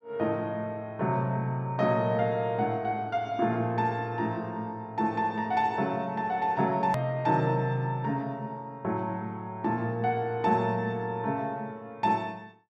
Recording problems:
click at an edit; at 7 s

